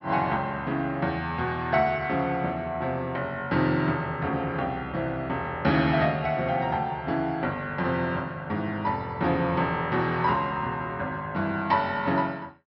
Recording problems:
low-pass filter; nothing above 5.8 kHz

